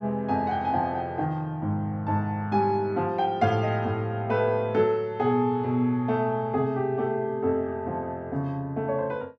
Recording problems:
none

